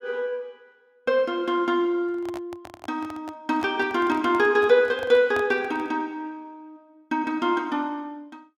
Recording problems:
handling noise; from 2 to 6 s; peak -7 dB vs average level

